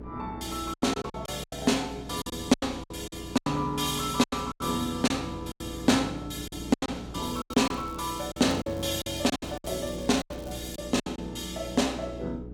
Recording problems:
electrical hum; 60 Hz, harmonics up to 420 Hz, SNR 14 dB
wind on the microphone; below 420 Hz, SNR 19 dB
lost packets; 12% of the sound replaced, filled with silence
crackle; from 7 to 11 s; loose cable, SNR 23 dB

